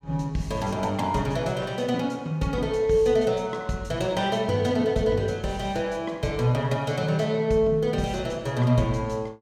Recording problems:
none

